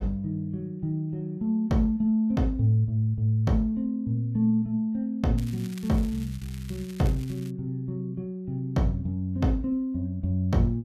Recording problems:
crackle; from 5.5 to 7.5 s; loose cable, SNR 21 dB

